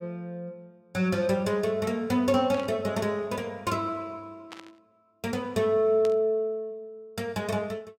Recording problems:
static burst; at 2.5 s, at 4.5 s and at 6 s; peak -10 dB vs average level

